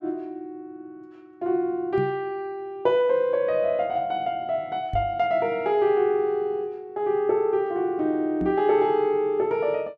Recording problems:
microphone thump; at 2 s, at 5 s and at 8.5 s; peak -3 dB vs average level

